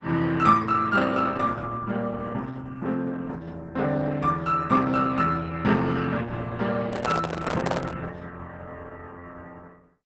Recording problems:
lossy codec; Opus, log-spectral distance 3 dB, nothing above 7.8 kHz
microphone handling noise; from 7 to 8 s; peak +1 dB vs average level

